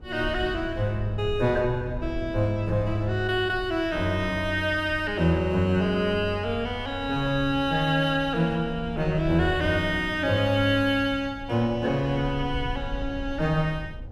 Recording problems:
low-frequency rumble; below 90 Hz, SNR 14 dB

